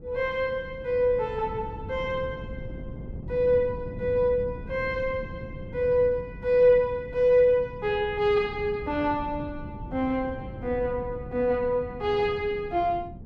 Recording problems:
wind on the microphone; below 210 Hz, SNR 14 dB

